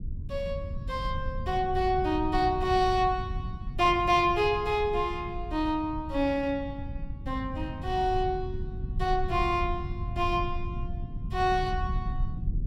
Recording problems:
rumble; below 110 Hz, SNR 8 dB

